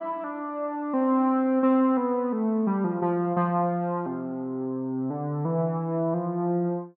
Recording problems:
none

